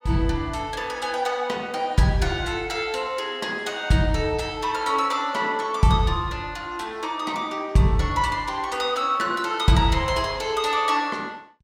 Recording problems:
none

